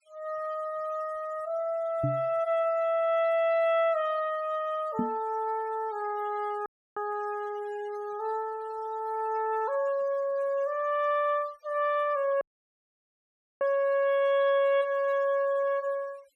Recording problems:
denoising artefacts; signal-to-artefact ratio 24 dB
microphone bump; at 2 s and at 5 s; peak +2 dB vs average level
audio cutting out; at 6.5 s and at 12 s for 1 s

